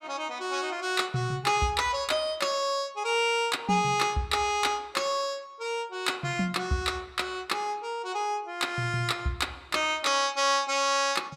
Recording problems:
none

